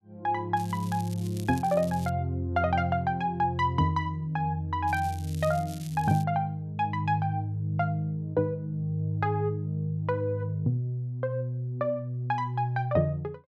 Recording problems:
crackling; from 0.5 to 2 s and from 5 to 6 s; loose cable, SNR 19 dB

